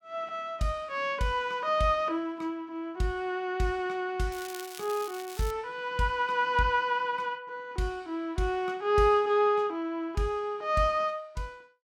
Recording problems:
crackling; from 4.5 to 5.5 s; loose cable, SNR 15 dB

